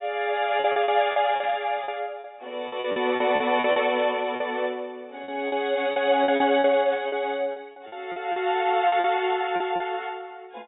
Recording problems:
treble cut off; nothing above 4 kHz
packet loss; 12% of the sound replaced, filled with repeated pitch periods
static burst; 4 times, first at 1.5 s; peak -14 dB vs average level

